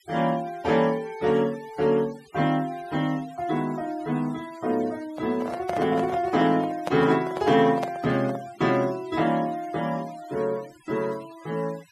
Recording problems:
denoising artefacts; signal-to-artefact ratio 21 dB
handling noise; from 5 to 8.5 s; peak -1 dB vs average level

